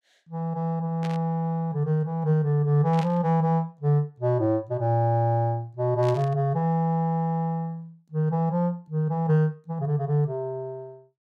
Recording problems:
static burst; at 1 s, at 3 s and at 6 s; peak -9 dB vs average level

